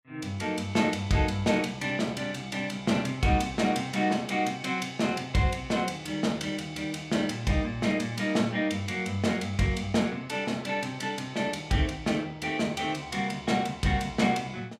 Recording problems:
none

